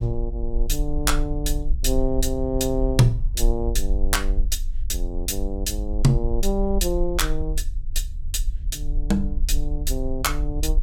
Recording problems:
low-frequency rumble; below 44 Hz, SNR 3 dB

